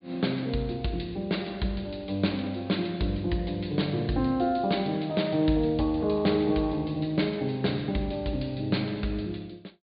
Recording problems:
low-pass filter; nothing above 4.6 kHz

